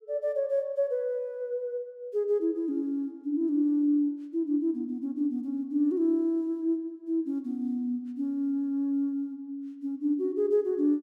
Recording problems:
none

